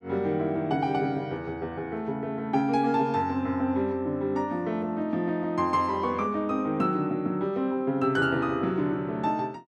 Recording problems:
none

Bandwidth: 12.5 kHz